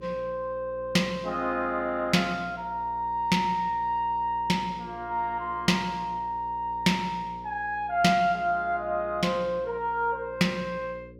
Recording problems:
electrical hum; 60 Hz, harmonics up to 540 Hz, SNR 20 dB

